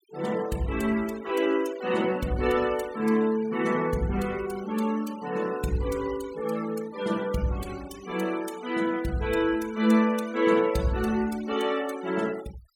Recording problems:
denoising artefacts; signal-to-artefact ratio 17 dB

